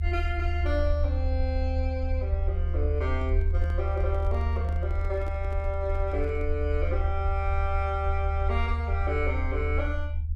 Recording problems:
rumble; below 78 Hz, strongest tone 76 Hz, SNR -4 dB
handling noise; from 3 to 6.5 s; peak -7 dB vs average level

